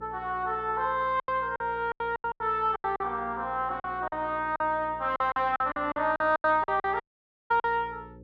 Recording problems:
electrical hum; 60 Hz, harmonics up to 540 Hz, SNR 22 dB
packet loss; 14% of the sound replaced, filled with silence
dropout; at 7 s for 0.5 s

